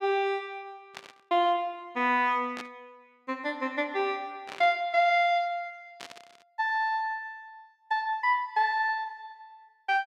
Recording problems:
static burst; 4 times, first at 1 s; peak -8 dB vs average level

